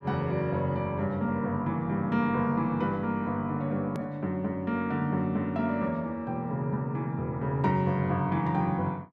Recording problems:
edit click; at 4 s

